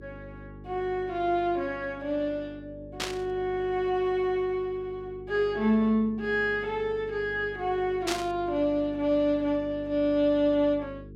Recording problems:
electrical hum; 50 Hz, harmonics up to 450 Hz, SNR 18 dB
burst of static; at 3 s and at 8 s; peak +1 dB vs average level

